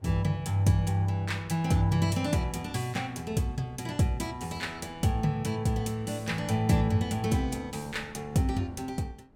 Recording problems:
wind on the microphone; below 380 Hz, SNR 23 dB

